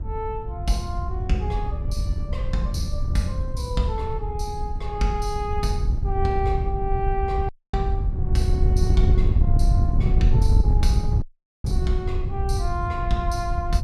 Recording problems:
hum; 50 Hz, harmonics up to 350 Hz, SNR 17 dB
wind on the microphone; below 90 Hz, SNR -4 dB
dropout; at 7.5 s and at 11 s

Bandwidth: 15 kHz